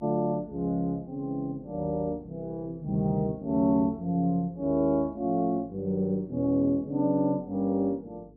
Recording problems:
electrical hum; 50 Hz, harmonics up to 450 Hz, SNR 26 dB

